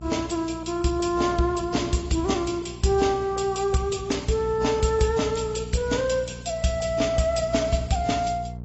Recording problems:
codec artefacts; AAC, log-spectral distance 5 dB, nothing above 7.6 kHz
hum; 60 Hz, harmonics up to 480 Hz, SNR 15 dB

